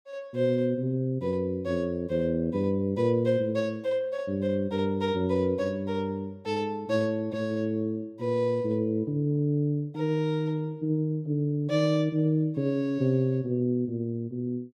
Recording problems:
none

